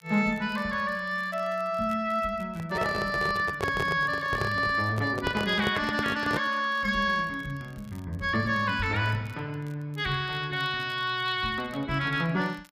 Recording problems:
crackle; vinyl, SNR 29 dB
handling noise; from 2.5 to 6.5 s; peak +2 dB vs average level

